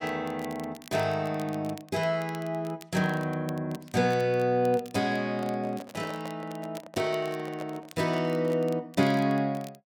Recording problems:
crackle; vinyl, SNR 23 dB
microphone handling noise; from 5 to 8.5 s; peak -6 dB vs average level

